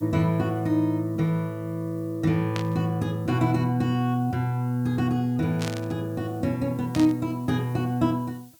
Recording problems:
hiss; slope +2 dB per octave, SNR 29 dB
burst of static; at 2.5 s, at 5.5 s and at 7 s; peak -4 dB vs average level

